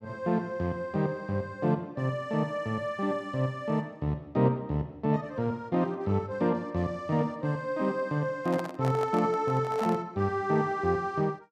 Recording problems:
handling noise; from 8.5 to 10 s; peak -3 dB vs average level

